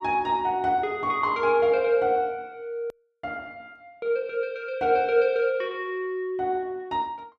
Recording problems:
hard cut with a click; at 3 s

